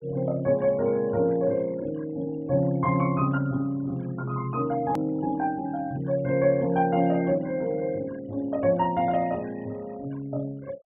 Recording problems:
low-pass filter; nothing above 3.6 kHz
denoising artefacts; signal-to-artefact ratio 25 dB
click at an edit; at 5 s

